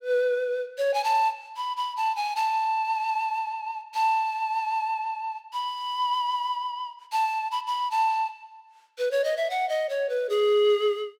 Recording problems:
none

